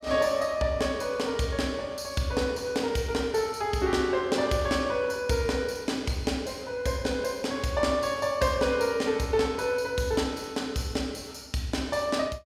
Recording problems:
none

